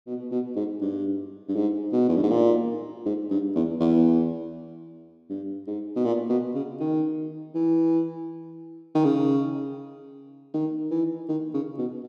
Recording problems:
none

